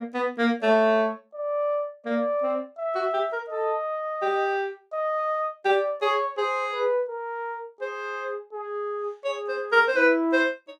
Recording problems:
none

